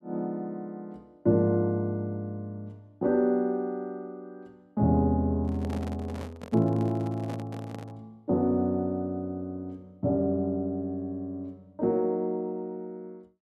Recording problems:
microphone handling noise; from 5.5 to 8 s; peak -5 dB vs average level

